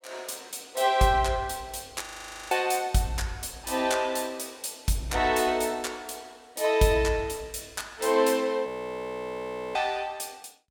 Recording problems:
frozen audio; at 2 s and at 8.5 s for 1 s

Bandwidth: 17.5 kHz